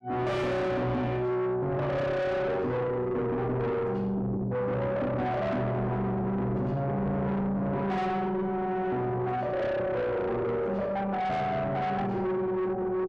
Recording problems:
distorted audio; soft clipping, signal-to-distortion ratio 5 dB

